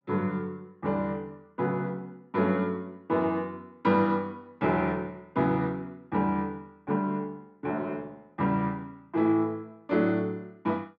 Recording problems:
none

